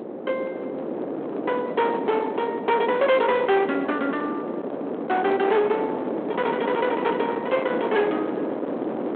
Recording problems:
telephone audio; 240 Hz to 3.7 kHz, G.726
distortion; hard clipping, signal-to-distortion ratio 10 dB
wind on the microphone; below 710 Hz, SNR 6 dB

